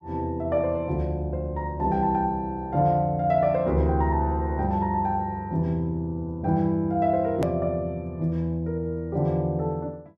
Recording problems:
click at an edit; at 7.5 s

